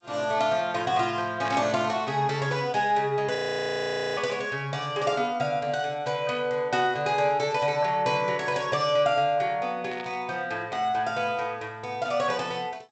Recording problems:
lossy compression; G.722, log-spectral distance 2 dB, nothing above 7.6 kHz
static burst; at 1.5 s and at 10 s; peak -8 dB vs average level
frozen audio; at 3.5 s for 1 s

